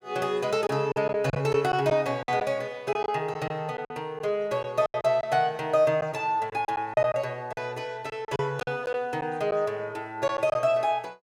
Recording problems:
packet loss; 8% of the sound replaced, filled with silence

